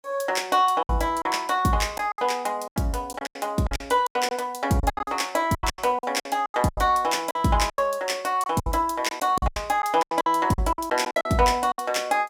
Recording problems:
packet loss; 15% of the sound replaced, filled with silence

